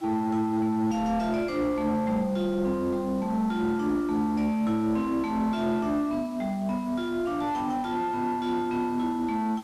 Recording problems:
distortion; soft clipping, signal-to-distortion ratio 8 dB
background hiss; SNR 24 dB

